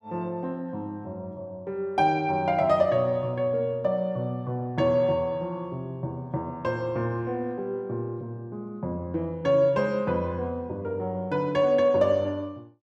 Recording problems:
none

